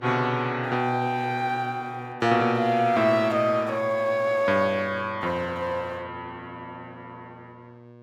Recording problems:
hum; 60 Hz, harmonics up to 1.2 kHz, SNR 23 dB

